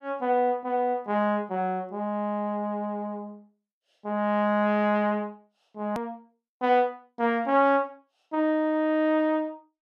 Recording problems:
hard cut with a click; at 6 s

